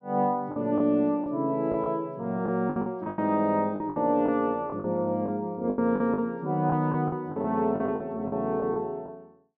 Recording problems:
treble cut off; nothing above 5.9 kHz
packet loss; 11% of the sound replaced, filled with the last packet

